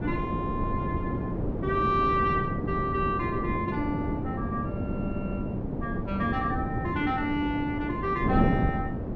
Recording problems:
wind noise; below 350 Hz, SNR 1 dB

